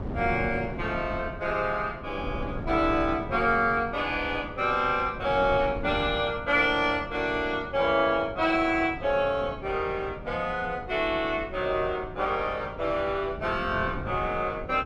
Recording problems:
wind on the microphone; below 290 Hz, SNR 13 dB

